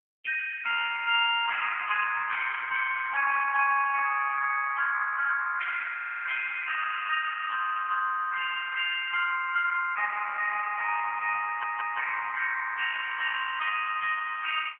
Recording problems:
telephone audio; 950 Hz to 2.2 kHz, AMR-NB
stutter; at 6 s and at 11 s

